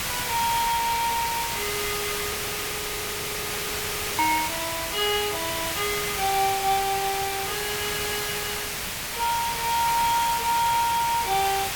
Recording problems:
hiss; slope 0 dB per octave, SNR 1 dB
frozen audio; at 2.5 s for 2 s

